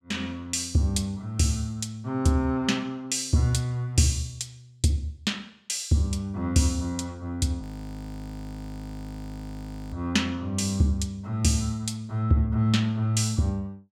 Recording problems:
audio freezing; at 7.5 s for 2.5 s

